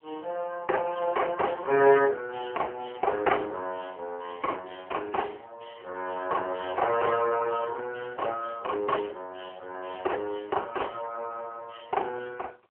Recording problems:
phone line; 320 Hz to 3 kHz, AMR-NB

